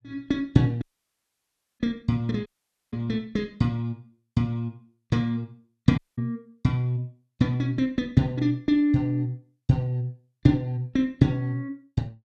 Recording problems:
dropout; at 1 s for 1 s, at 2.5 s and at 6 s

